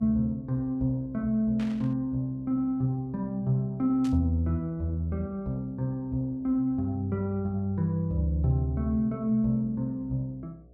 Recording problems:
electrical hum; 60 Hz, harmonics up to 720 Hz, SNR 27 dB
static burst; at 1.5 s and at 4 s; peak -12 dB vs average level

